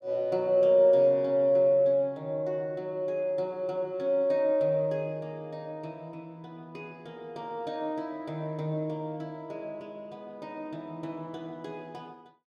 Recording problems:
none

